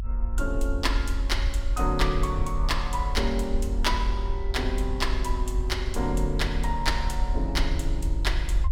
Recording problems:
rumble; below 52 Hz, strongest tone 44 Hz, SNR 0 dB

